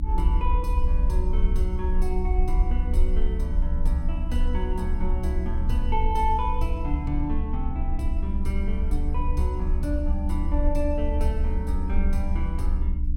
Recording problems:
hum; 60 Hz, harmonics up to 300 Hz, SNR 5 dB
low-frequency rumble; below 68 Hz, strongest tone 22 Hz, SNR -4 dB

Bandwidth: 16.5 kHz